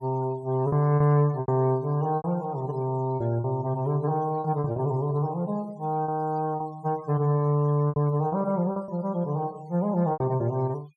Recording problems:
denoising artefacts; signal-to-artefact ratio 27 dB
packet loss; 8% of the sound replaced, filled with repeated pitch periods

